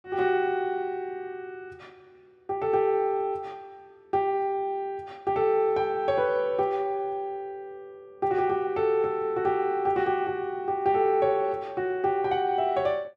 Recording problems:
none

